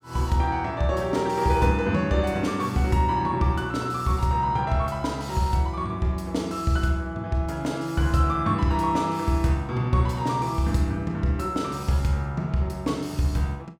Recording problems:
none

